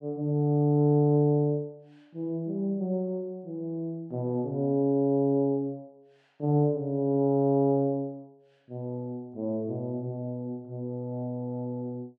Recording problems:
none

